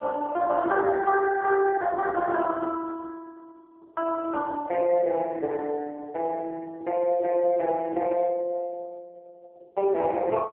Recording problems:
phone line; 300 Hz to 2.3 kHz, AMR-NB

